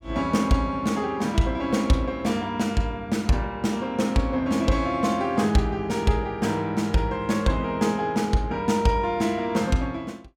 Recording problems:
none

